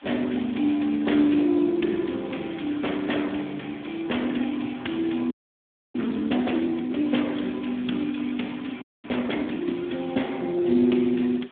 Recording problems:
phone line; 170 Hz to 3.6 kHz, Speex
background hiss; SNR 27 dB
frozen audio; at 5.5 s for 0.5 s and at 9 s

